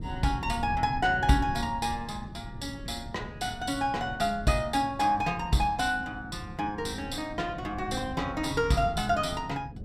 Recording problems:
wind on the microphone; below 170 Hz, SNR 12 dB

